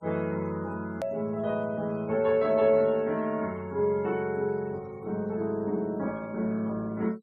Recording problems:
noise reduction artefacts; signal-to-artefact ratio 27 dB
edit click; at 1 s

